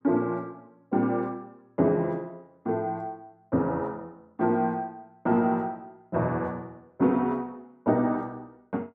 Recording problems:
none

